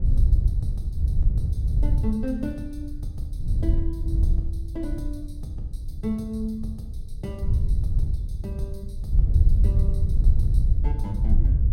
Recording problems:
wind on the microphone; below 76 Hz, SNR -10 dB

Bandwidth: 16 kHz